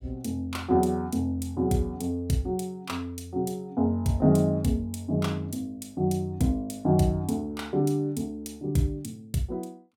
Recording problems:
none

